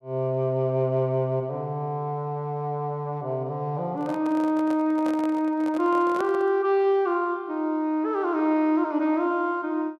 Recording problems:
microphone handling noise; from 4 to 6.5 s; peak -6 dB vs average level

